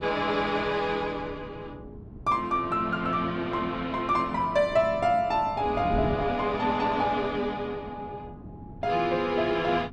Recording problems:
wind noise; below 290 Hz, SNR 15 dB

